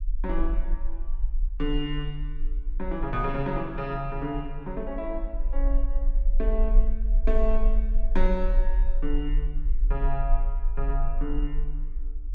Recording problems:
low-frequency rumble; below 38 Hz, strongest tone 20 Hz, SNR -3 dB

